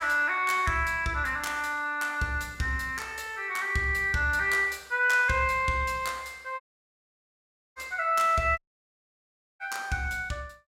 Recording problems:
dropout; at 6.5 s for 1 s and at 8.5 s for 1 s

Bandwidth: 16 kHz